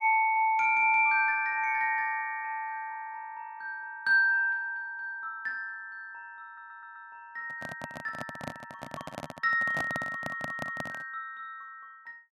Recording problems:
audio stuttering; at 6.5 s and at 10 s
handling noise; from 7.5 to 11 s; peak -3 dB vs average level

